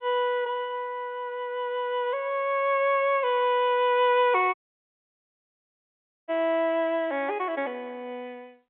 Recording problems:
telephone audio; 280 Hz to 3.4 kHz, G.711
audio cutting out; at 4.5 s for 1.5 s

